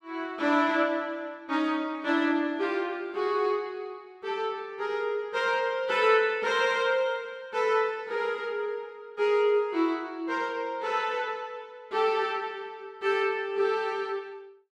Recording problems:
none

